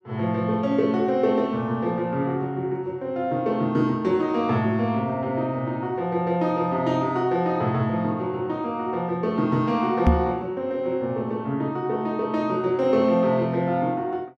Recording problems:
knock on the microphone; at 10 s; peak +9 dB vs average level

